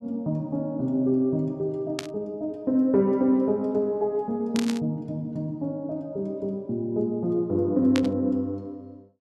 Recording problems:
static burst; at 2 s, at 4.5 s and at 8 s; peak -1 dB vs average level

